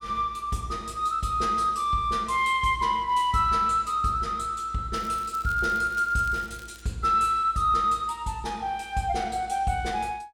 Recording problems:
crackle; from 5 to 7 s; loose cable, SNR 23 dB

